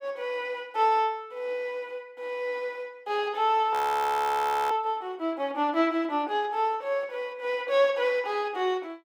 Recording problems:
frozen audio; at 3.5 s for 1 s

